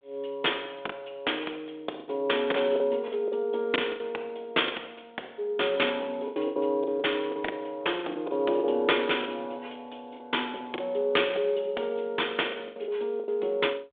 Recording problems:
phone line; 300 Hz to 3.6 kHz, G.726
lost packets; 9% of the sound replaced, filled with the last packet

